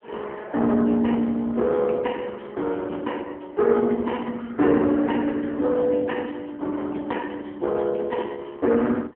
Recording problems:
telephone audio; 190 Hz to 3 kHz, AMR-NB

